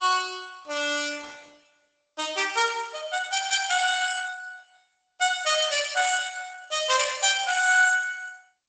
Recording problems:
lossy codec; Opus, then G.722, log-spectral distance 8 dB, nothing above 8 kHz

